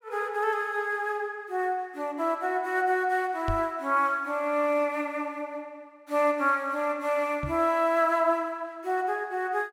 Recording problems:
microphone bump; at 3.5 s and at 7.5 s; peak -1 dB vs average level

